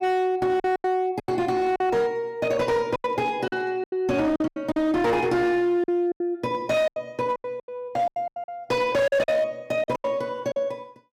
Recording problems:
distorted audio; hard clipping, signal-to-distortion ratio 10 dB
packet loss; 13% of the sound replaced, filled with silence

